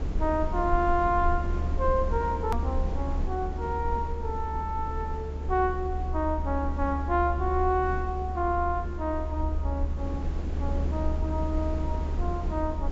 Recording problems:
treble cut off; nothing above 7.5 kHz
hiss; slope -8 dB per octave, SNR 10 dB
low-frequency rumble; below 74 Hz, SNR 3 dB
click at an edit; at 2.5 s

